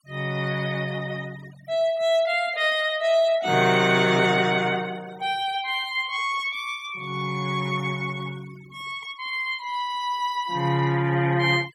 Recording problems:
denoising artefacts; signal-to-artefact ratio 22 dB

